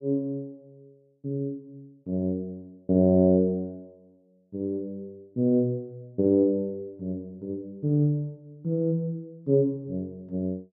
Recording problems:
none

